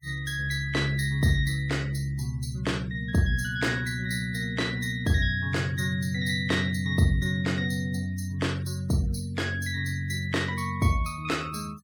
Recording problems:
noise reduction artefacts; signal-to-artefact ratio 22 dB

